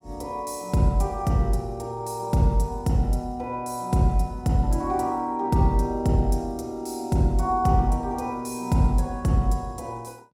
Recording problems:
none

